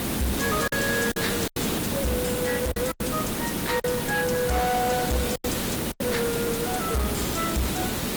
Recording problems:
lossy compression; Opus, log-spectral distance 7 dB, nothing above 20.1 kHz
distorted audio; hard clipping, signal-to-distortion ratio 11 dB
background hiss; slope -4 dB per octave, SNR 0 dB
lost packets; 6% of the sound replaced, filled with silence

